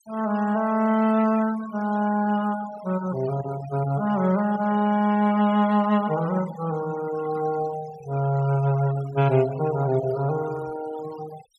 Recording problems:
denoising artefacts; signal-to-artefact ratio 18 dB

